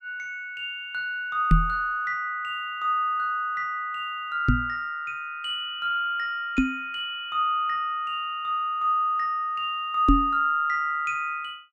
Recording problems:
knock on the microphone; 4 times, first at 1.5 s; peak +10 dB vs average level

